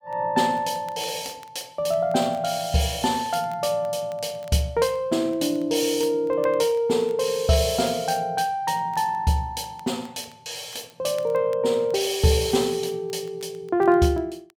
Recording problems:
crackle; vinyl, SNR 30 dB

